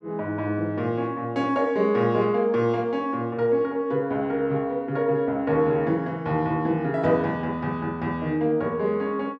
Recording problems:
none

